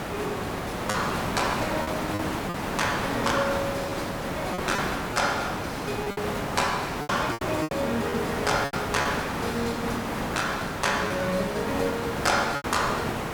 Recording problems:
background hiss; SNR 1 dB
lost packets; 6% of the sound replaced, filled with repeated pitch periods

